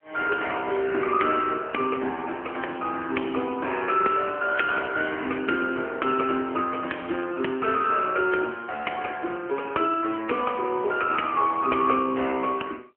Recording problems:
telephone audio; 280 Hz to 3.1 kHz, AMR-NB

